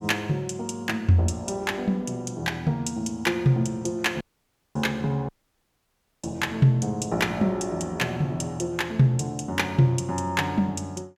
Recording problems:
audio cutting out; at 4 s for 0.5 s and at 5.5 s for 1 s

